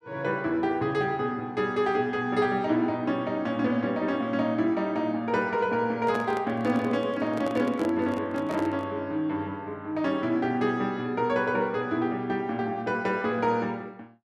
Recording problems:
microphone handling noise; from 6 to 9 s; peak -5 dB vs average level

